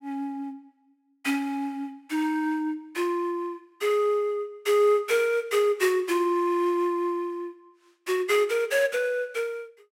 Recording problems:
none

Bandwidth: 16 kHz